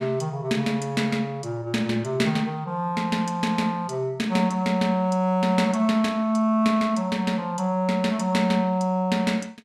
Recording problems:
none

